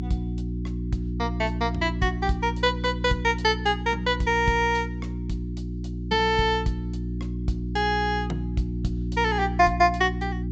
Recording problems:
treble cut off; nothing above 8 kHz
hum; 60 Hz, harmonics up to 360 Hz, SNR 6 dB

